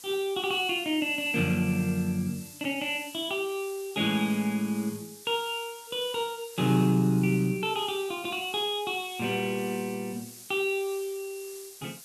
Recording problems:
background hiss; SNR 16 dB

